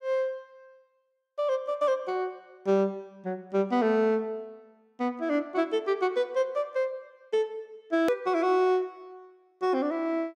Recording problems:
hard cut with a click; at 8 s

